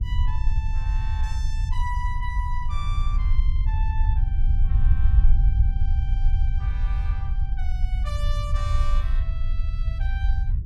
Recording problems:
rumble; below 62 Hz, SNR -14 dB

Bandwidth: 16.5 kHz